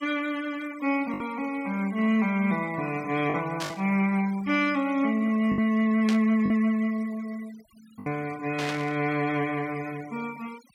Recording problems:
noise reduction artefacts; signal-to-artefact ratio 21 dB
lost packets; 3% of the sound replaced, filled with the last packet
burst of static; at 3.5 s, at 6 s and at 8.5 s; peak -3 dB vs average level

